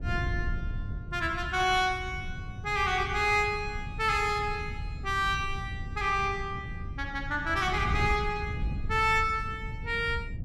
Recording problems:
wind on the microphone; below 120 Hz, SNR 8 dB

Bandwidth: 14 kHz